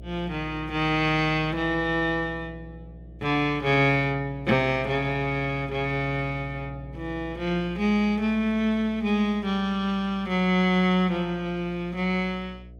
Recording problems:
hum; 60 Hz, harmonics up to 660 Hz, SNR 18 dB

